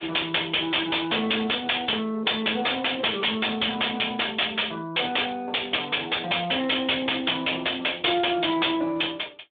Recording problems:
phone line; 280 Hz to 3.5 kHz, Speex
distortion; soft clipping, signal-to-distortion ratio 8 dB

